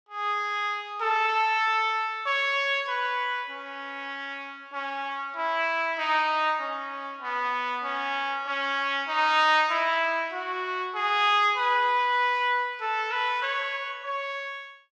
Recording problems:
none

